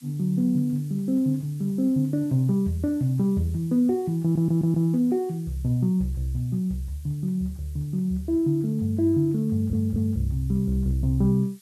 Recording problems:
background hiss; slope +3 dB per octave, SNR 28 dB
stutter; at 4 s and at 9.5 s

